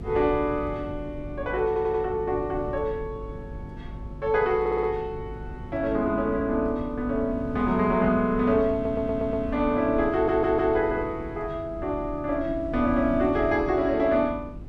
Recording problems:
electrical hum; 50 Hz, harmonics up to 400 Hz, SNR 17 dB
wind on the microphone; below 160 Hz, SNR 14 dB
audio stuttering; 4 times, first at 1.5 s

